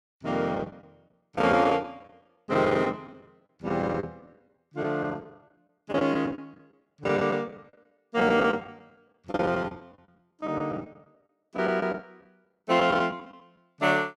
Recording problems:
packet loss; 14% of the sound replaced, filled with the last packet

